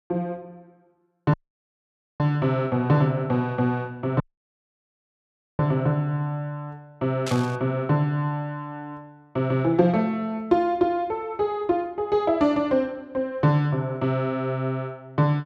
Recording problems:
audio cutting out; at 1.5 s for 1 s and at 4 s for 1.5 s
static burst; at 7.5 s; peak -4 dB vs average level

